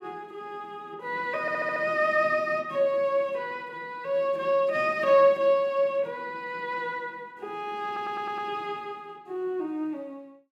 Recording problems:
stutter; at 1.5 s and at 8 s

